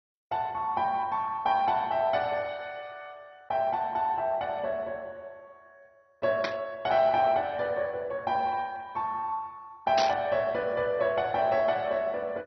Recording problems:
codec artefacts; MP2, log-spectral distance 2 dB, nothing above 4.9 kHz
static burst; at 6.5 s and at 10 s; peak +2 dB vs average level

